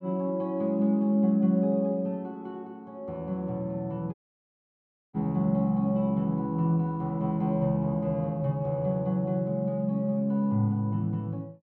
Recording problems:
dropout; at 4 s for 1 s

